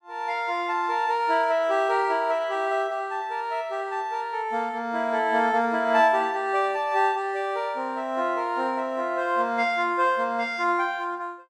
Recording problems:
none

